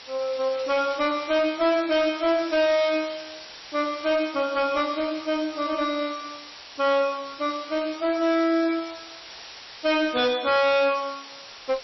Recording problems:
codec artefacts; MP3, log-spectral distance 18 dB, nothing above 5.3 kHz
distorted audio; hard clipping, uneven, signal-to-distortion ratio 10 dB
hiss; slope +1 dB per octave, SNR 15 dB

